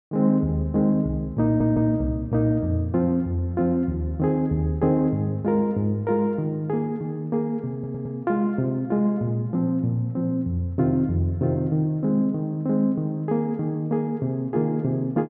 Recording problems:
stutter; at 1.5 s and at 7.5 s

